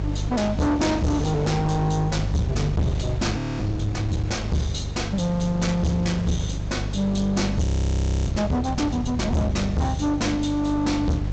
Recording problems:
low-pass filter; nothing above 8 kHz
distortion; hard clipping, uneven, signal-to-distortion ratio 7 dB
electrical hum; 50 Hz, harmonics up to 350 Hz, SNR 6 dB
wind noise; below 490 Hz, SNR 14 dB
audio freezing; at 3.5 s and at 7.5 s for 0.5 s

